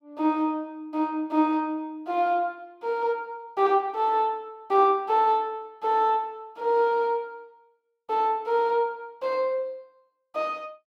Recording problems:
none

